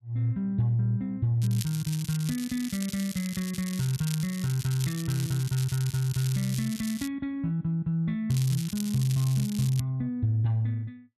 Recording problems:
crackle; from 1.5 to 4 s, from 4 to 7 s and from 8.5 to 10 s; loose cable, SNR 11 dB

